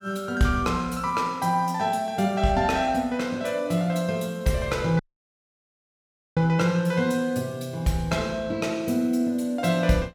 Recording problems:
dropout; at 5 s for 1.5 s

